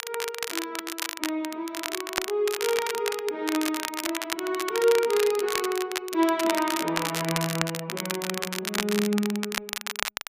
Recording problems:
crackle; vinyl, SNR 4 dB

